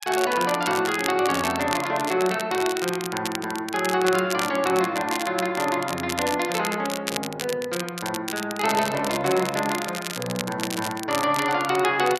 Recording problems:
crackling; vinyl, SNR 8 dB
handling noise; from 8.5 to 11 s; peak -11 dB vs average level

